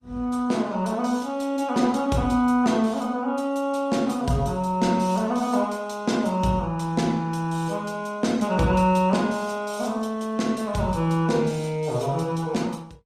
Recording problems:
codec artefacts; Opus, log-spectral distance 3 dB, nothing above 14.3 kHz

